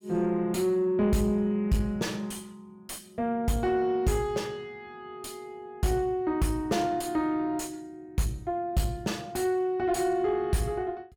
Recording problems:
distortion; soft clipping, signal-to-distortion ratio 6 dB

